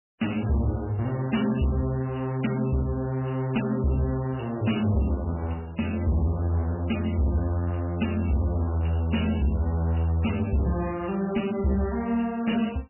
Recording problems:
lossy codec; MP3, log-spectral distance 5 dB, nothing above 2.9 kHz
distortion; hard clipping, signal-to-distortion ratio 11 dB

